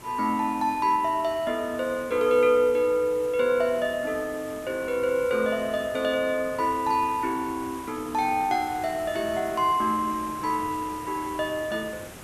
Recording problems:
background hiss; slope -5 dB per octave, SNR 17 dB

